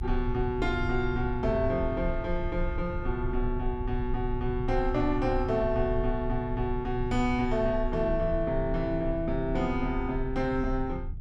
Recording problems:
rumble; below 70 Hz, strongest tone 28 Hz, SNR 7 dB

